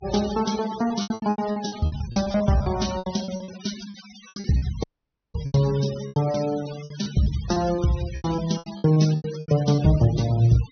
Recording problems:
treble missing; nothing above 6.2 kHz
noise reduction artefacts; signal-to-artefact ratio 15 dB
packet loss; 17% of the sound replaced, filled with repeated pitch periods
dropout; at 5 s for 0.5 s

